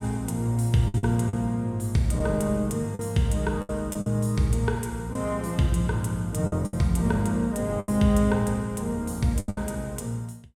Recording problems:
lost packets; 7% of the sound replaced, filled with the last packet

